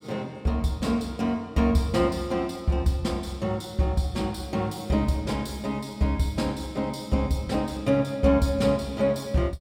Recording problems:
none

